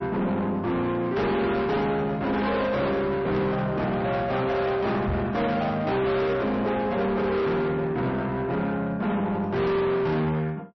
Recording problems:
lossy compression; MP3, log-spectral distance 2 dB, nothing above 5.7 kHz
distortion; soft clipping, signal-to-distortion ratio 7 dB
microphone bump; at 5 s; peak +2 dB vs average level

